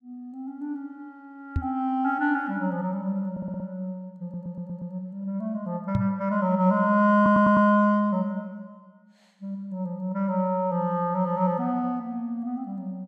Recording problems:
microphone thump; at 1.5 s and at 6 s; peak +2 dB vs average level
audio stuttering; at 3.5 s, at 4 s and at 7 s

